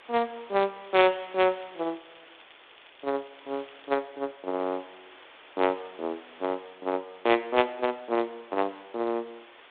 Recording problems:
phone line; 220 Hz to 3.7 kHz, G.726
background hiss; SNR 22 dB
crackle; from 1 to 4 s; loose cable, SNR 27 dB

